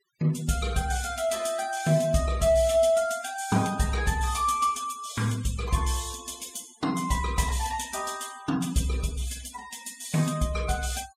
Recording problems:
noise reduction artefacts; signal-to-artefact ratio 18 dB

